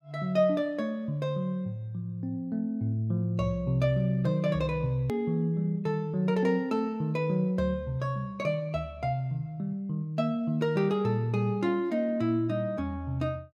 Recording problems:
click at an edit; at 5 s

